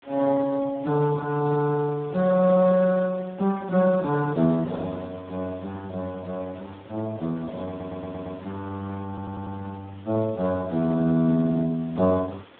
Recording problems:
telephone audio; 130 Hz to 2 kHz, Speex
hiss; SNR 25 dB
stutter; at 7.5 s and at 9 s

